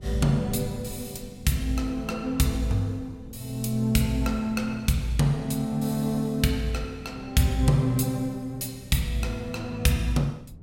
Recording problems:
wind on the microphone; below 170 Hz, SNR 18 dB

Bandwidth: 16 kHz